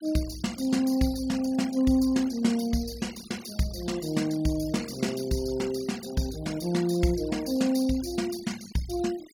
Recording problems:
noise reduction artefacts; signal-to-artefact ratio 17 dB

